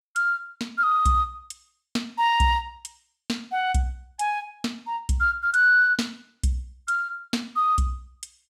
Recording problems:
none

